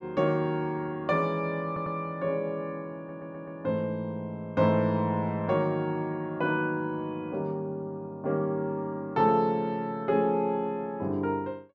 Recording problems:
audio stuttering; at 1.5 s and at 3 s

